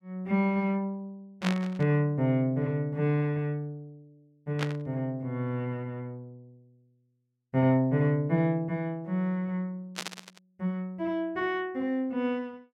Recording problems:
burst of static; at 1.5 s, at 4.5 s and at 10 s; peak +1 dB vs average level

